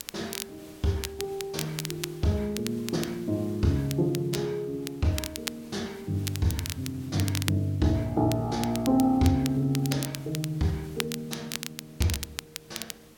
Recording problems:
hiss; slope -3 dB per octave, SNR 23 dB
crackle; vinyl, SNR 9 dB

